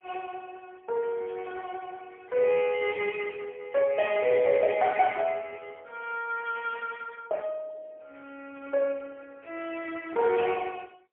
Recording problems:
telephone audio; 300 Hz to 3.3 kHz, AMR-NB, then MP3

